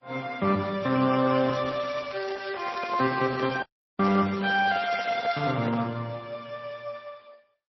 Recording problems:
lossy compression; Opus, then MP3, log-spectral distance 6 dB, nothing above 5.3 kHz
crackle; from 1.5 to 3.5 s and from 4 to 5.5 s; loose cable, SNR 20 dB
microphone handling noise; from 2.5 to 6 s; peak -6 dB vs average level
dropout; at 3.5 s

